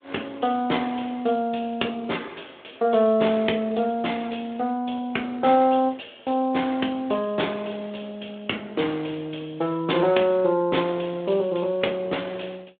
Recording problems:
phone line; 220 Hz to 3.6 kHz, Speex

